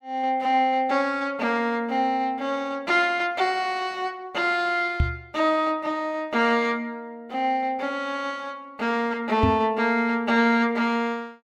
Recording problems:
microphone thump; at 5 s and at 9.5 s; peak +5 dB vs average level

